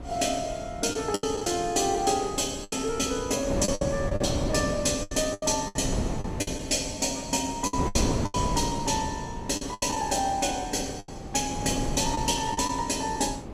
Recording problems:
wind noise; below 380 Hz, SNR 7 dB
lost packets; 9% of the sound replaced, filled with the last packet

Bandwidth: 14.5 kHz